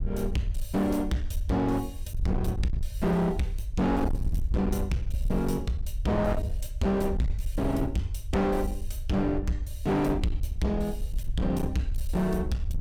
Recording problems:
distorted audio; hard clipping, signal-to-distortion ratio 7 dB
rumble; below 74 Hz, SNR 5 dB

